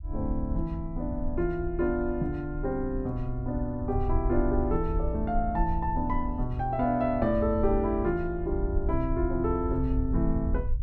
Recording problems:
rumble; below 72 Hz, SNR 5 dB

